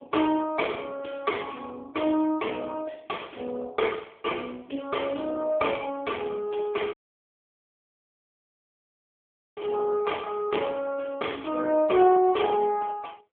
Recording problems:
telephone audio; 240 Hz to 3.4 kHz, AMR-NB
audio cutting out; at 7 s for 2.5 s

